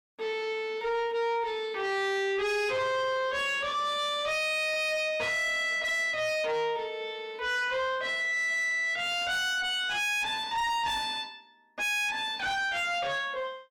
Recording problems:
distorted audio; soft clipping, signal-to-distortion ratio 6 dB

